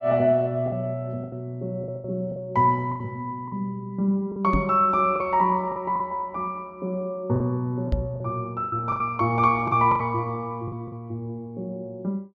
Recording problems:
lost packets; 8% of the sound replaced, filled with the last packet
microphone thump; at 4.5 s and at 8 s; peak +4 dB vs average level

